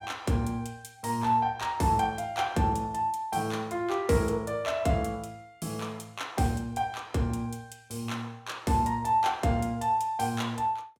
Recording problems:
none

